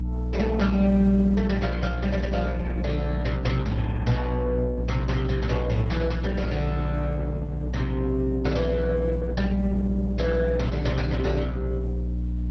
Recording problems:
codec artefacts; MP2, then Opus, log-spectral distance 3 dB
hum; 60 Hz, harmonics up to 300 Hz, SNR 2 dB

